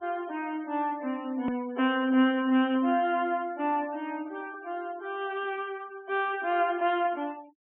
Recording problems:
low-pass filter; nothing above 3.3 kHz
denoising artefacts; signal-to-artefact ratio 24 dB
click at an edit; at 1.5 s

